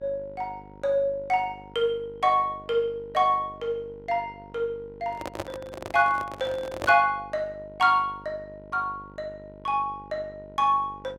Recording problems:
hum; 50 Hz, harmonics up to 1.4 kHz, SNR 22 dB
handling noise; from 5 to 7 s; peak -1 dB vs average level

